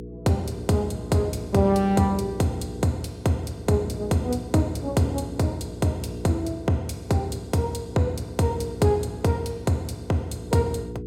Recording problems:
hum; 60 Hz, harmonics up to 480 Hz, SNR 12 dB

